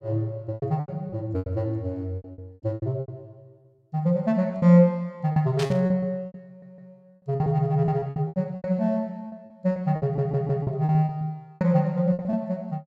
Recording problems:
packet loss; 15% of the sound replaced, filled with repeated pitch periods
burst of static; at 5.5 s; peak -4 dB vs average level
stutter; at 6.5 s and at 10 s

